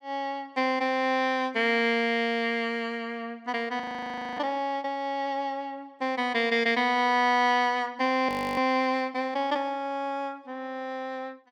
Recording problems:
frozen audio; at 4 s for 0.5 s and at 8.5 s

